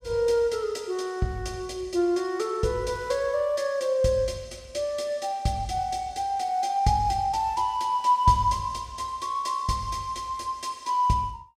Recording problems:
none

